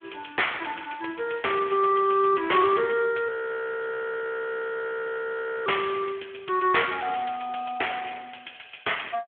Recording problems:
phone line; 320 Hz to 3.4 kHz, Speex
audio freezing; at 3.5 s for 2.5 s

